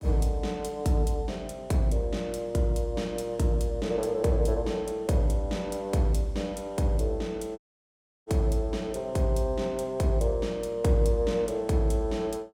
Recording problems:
dropout; at 7.5 s for 0.5 s

